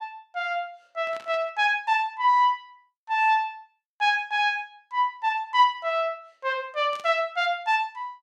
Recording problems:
burst of static; at 1 s and at 7 s; peak -15 dB vs average level

